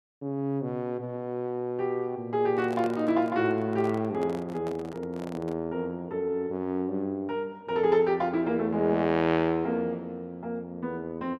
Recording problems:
handling noise; from 2.5 to 5.5 s; peak -8 dB vs average level

